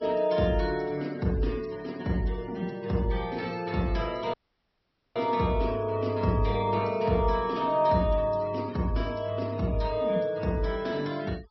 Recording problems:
treble cut off; nothing above 5.7 kHz
noise reduction artefacts; signal-to-artefact ratio 23 dB
audio cutting out; at 4.5 s for 1 s

